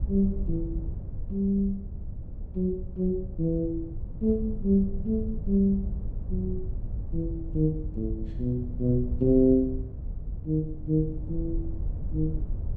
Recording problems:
rumble; below 84 Hz, SNR 8 dB

